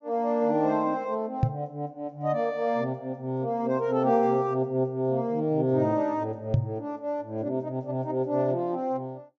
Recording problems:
treble missing; nothing above 8 kHz
knock on the microphone; at 1.5 s and at 6.5 s; peak +8 dB vs average level

